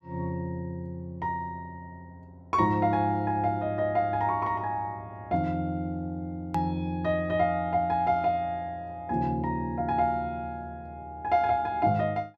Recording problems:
click at an edit; at 6.5 s

